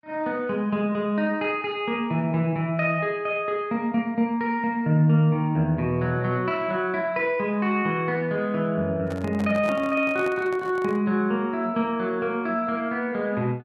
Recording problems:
microphone handling noise; from 9 to 11 s; peak -6 dB vs average level

